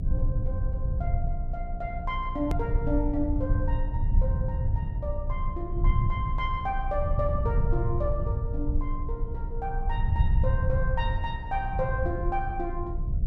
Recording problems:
electrical hum; 60 Hz, harmonics up to 660 Hz, SNR 9 dB
rumble; below 92 Hz, SNR -3 dB
hard cut with a click; at 2.5 s

